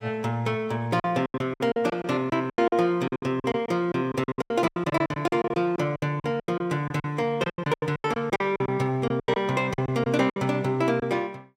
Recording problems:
packet loss; 18% of the sound replaced, filled with silence

